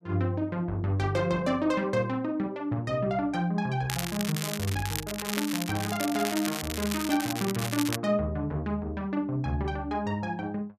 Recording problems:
crackle; from 4 to 8 s; loose cable, SNR 5 dB

